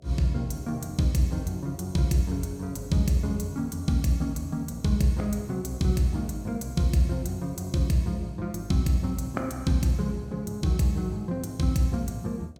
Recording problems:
hum; 60 Hz, harmonics up to 720 Hz, SNR 28 dB

